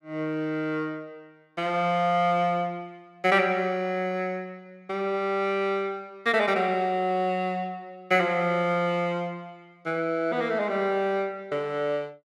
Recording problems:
none

